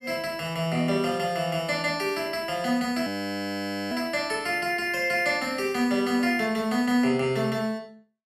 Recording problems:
frozen audio; at 3 s for 1 s

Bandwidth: 14.5 kHz